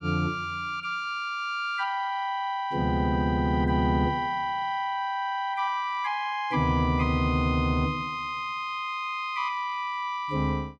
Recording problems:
none

